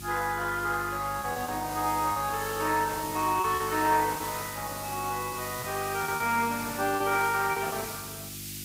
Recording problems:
codec artefacts; Opus, log-spectral distance 4 dB
hum; 50 Hz, harmonics up to 350 Hz, SNR 14 dB
hiss; SNR 10 dB
lost packets; 6% of the sound replaced, filled with repeated pitch periods

